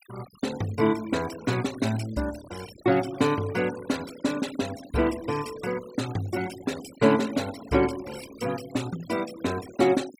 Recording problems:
noise reduction artefacts; signal-to-artefact ratio 16 dB

